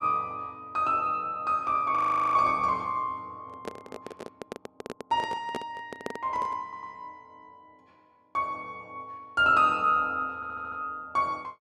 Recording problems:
audio freezing; at 2 s
handling noise; from 3.5 to 6.5 s; peak -3 dB vs average level
audio stuttering; at 6.5 s and at 10 s

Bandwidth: 12 kHz